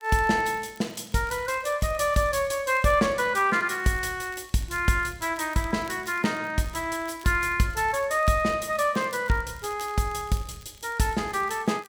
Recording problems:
crackle; vinyl, SNR 25 dB

